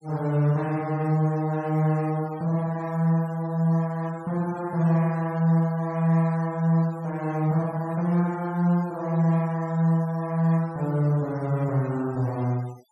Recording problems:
denoising artefacts; signal-to-artefact ratio 26 dB

